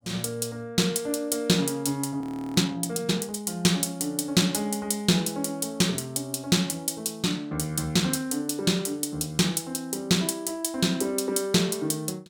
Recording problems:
audio freezing; at 2 s

